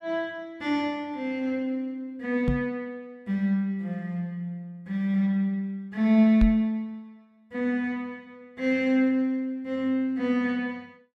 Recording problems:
knock on the microphone; at 2.5 s and at 6.5 s; peak +5 dB vs average level

